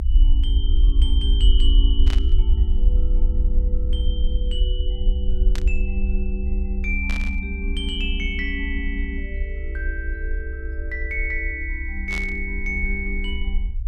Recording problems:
rumble; below 58 Hz, SNR -6 dB
static burst; 4 times, first at 2 s; peak -1 dB vs average level

